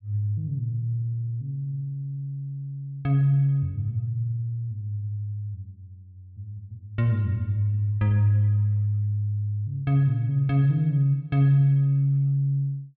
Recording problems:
none

